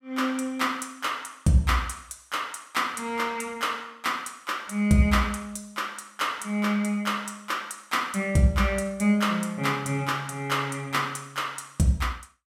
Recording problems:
none

